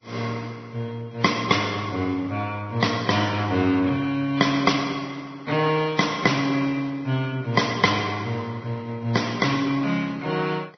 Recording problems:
lossy codec; MP2, then Vorbis, log-spectral distance 4 dB, nothing above 6 kHz

